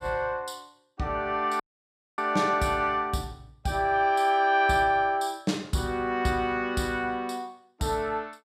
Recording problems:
dropout; at 1.5 s for 0.5 s

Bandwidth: 15 kHz